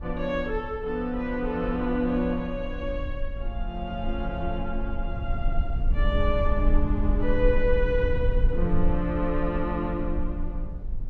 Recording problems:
rumble; below 54 Hz, SNR 2 dB

